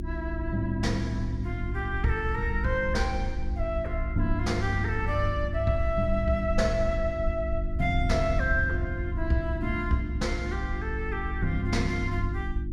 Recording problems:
electrical hum; 50 Hz, harmonics up to 350 Hz, SNR 9 dB
low-frequency rumble; below 64 Hz, SNR 5 dB

